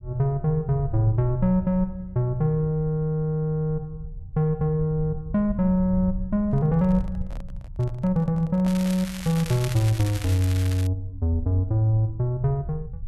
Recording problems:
low-frequency rumble; below 82 Hz, SNR 14 dB
handling noise; from 6.5 to 9.5 s; peak -11 dB vs average level
crackle; from 8.5 to 11 s; loose cable, SNR 13 dB

